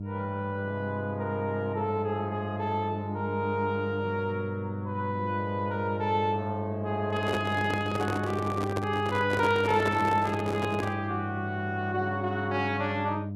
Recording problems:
hum; 50 Hz, harmonics up to 600 Hz, SNR 5 dB
handling noise; from 7 to 11 s; peak +2 dB vs average level

